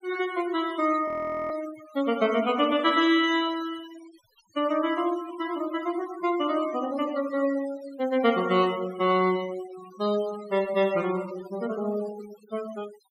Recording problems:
noise reduction artefacts; signal-to-artefact ratio 17 dB
frozen audio; at 1 s

